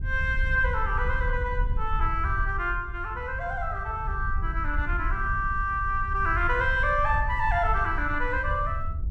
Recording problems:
wind on the microphone; below 70 Hz, SNR 5 dB

